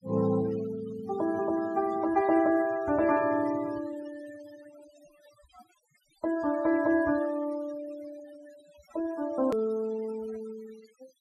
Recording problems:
noise reduction artefacts; signal-to-artefact ratio 19 dB
edit click; at 9.5 s

